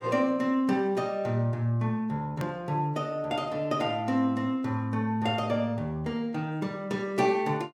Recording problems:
edit click; at 2.5 s

